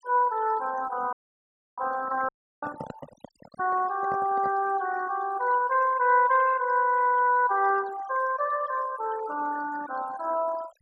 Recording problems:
noise reduction artefacts; signal-to-artefact ratio 18 dB
audio cutting out; at 1 s for 0.5 s and at 2.5 s
microphone handling noise; from 2.5 to 4.5 s; peak -7 dB vs average level

